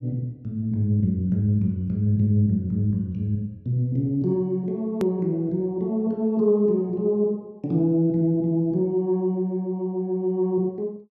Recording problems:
edit click; at 5 s

